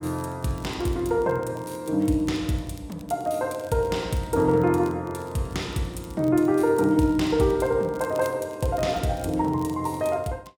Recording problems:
crackle; vinyl, SNR 27 dB

